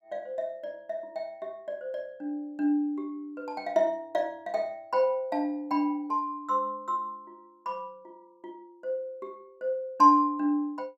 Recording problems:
none

